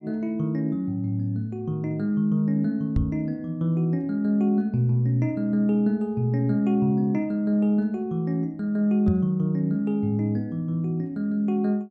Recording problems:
knock on the microphone; at 3 s and at 9 s; peak +3 dB vs average level

